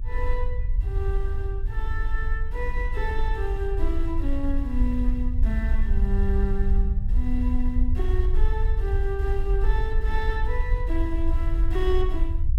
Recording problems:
low-frequency rumble; below 56 Hz, strongest tone 20 Hz, SNR -5 dB

